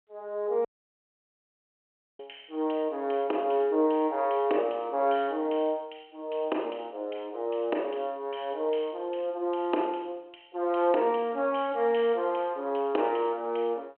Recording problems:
telephone audio; 280 Hz to 3.3 kHz, G.726
audio cutting out; at 0.5 s for 1.5 s

